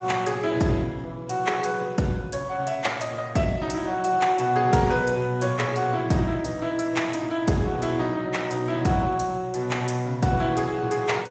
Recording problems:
lossy compression; Speex, log-spectral distance 4 dB, nothing above 7.8 kHz

